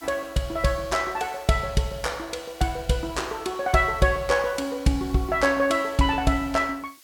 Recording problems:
background hiss; slope +3 dB per octave, SNR 25 dB

